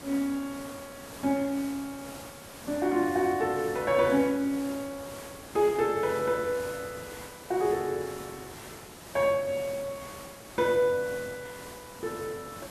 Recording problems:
hiss; slope -4 dB per octave, SNR 15 dB

